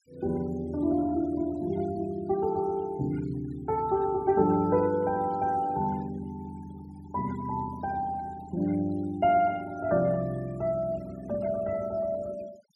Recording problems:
noise reduction artefacts; signal-to-artefact ratio 24 dB

